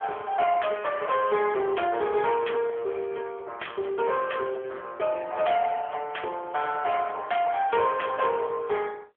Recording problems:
phone line; 340 Hz to 3.3 kHz, AMR-NB
distortion; soft clipping, signal-to-distortion ratio 13 dB

